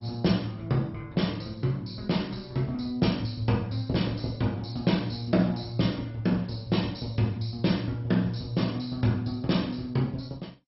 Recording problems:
codec artefacts; MP2, log-spectral distance 4 dB, nothing above 5.5 kHz

